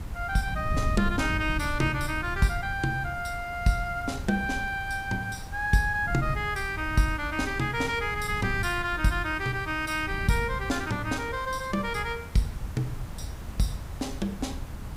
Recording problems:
background hiss; SNR 19 dB
wind noise; below 110 Hz, SNR 9 dB

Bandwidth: 15.5 kHz